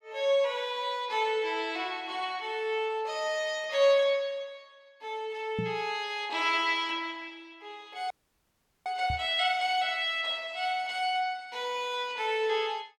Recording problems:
microphone bump; at 5.5 s and at 9 s; peak 0 dB vs average level
audio freezing; at 8 s for 1 s

